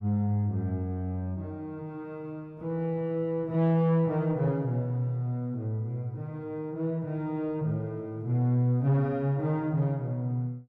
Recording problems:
distorted audio; soft clipping, signal-to-distortion ratio 12 dB

